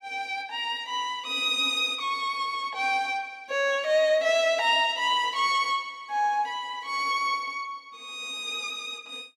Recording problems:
none

